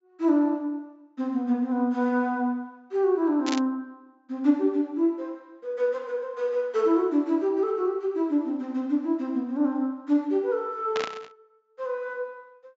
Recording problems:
low-pass filter; nothing above 8 kHz
burst of static; at 3.5 s and at 11 s; peak -1 dB vs average level

